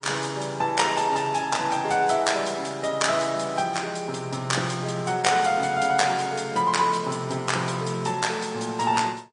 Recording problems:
lossy codec; MP3, log-spectral distance 4 dB, nothing above 9.2 kHz

